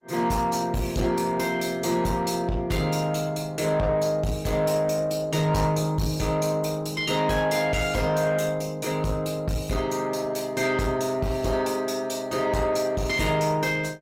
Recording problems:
lossy compression; Opus, log-spectral distance 4 dB, nothing above 16 kHz
distortion; soft clipping, signal-to-distortion ratio 12 dB

